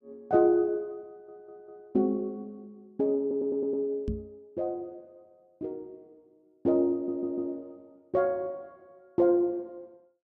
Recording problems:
audio stuttering; at 1 s, at 3 s and at 7 s
microphone thump; at 4 s; peak -1 dB vs average level

